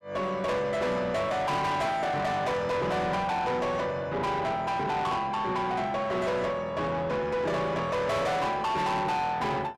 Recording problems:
distortion; soft clipping, signal-to-distortion ratio 8 dB

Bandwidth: 14 kHz